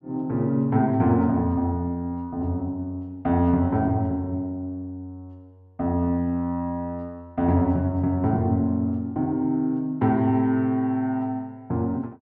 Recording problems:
none

